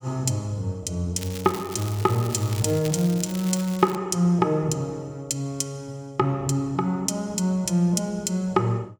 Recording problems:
crackling; from 1 to 4 s; loose cable, SNR 14 dB

